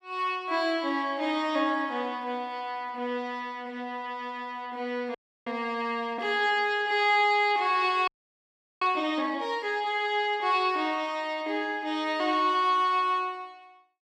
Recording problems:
frozen audio; at 5 s and at 8 s for 0.5 s

